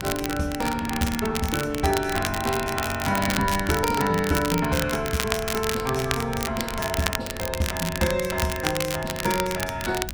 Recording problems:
wind noise; below 180 Hz, SNR 13 dB
crackle; vinyl, SNR 5 dB

